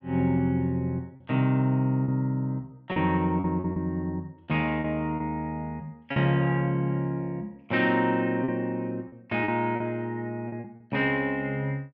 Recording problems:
packet loss; 6% of the sound replaced, filled with repeated pitch periods

